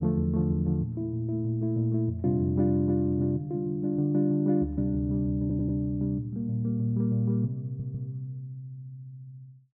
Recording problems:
audio stuttering; at 5.5 s and at 7.5 s

